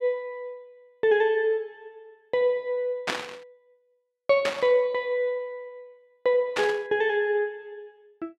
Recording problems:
static burst; at 3 s, at 4.5 s and at 6.5 s; peak +2 dB vs average level

